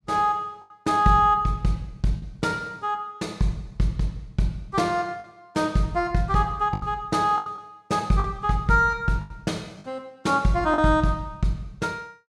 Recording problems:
packet loss; 5% of the sound replaced, filled with the last packet

